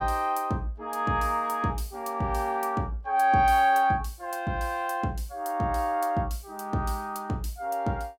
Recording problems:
none

